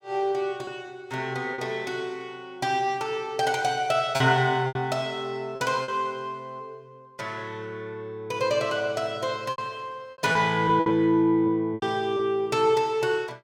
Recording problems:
lost packets; 5% of the sound replaced, filled with repeated pitch periods

